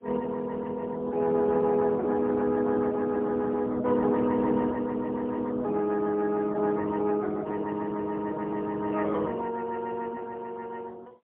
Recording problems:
phone line; 320 Hz to 2.5 kHz, AMR-NB, then MP3

